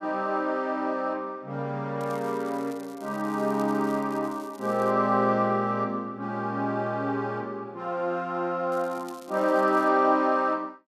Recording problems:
crackling; from 2 to 5 s and from 8.5 to 10 s; loose cable, SNR 25 dB

